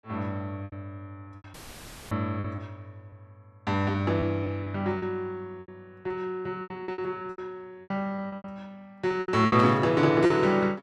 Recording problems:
packet loss; 12% of the sound replaced, filled with repeated pitch periods
audio cutting out; at 1.5 s for 0.5 s; filled with static
static burst; at 9.5 s; peak -6 dB vs average level

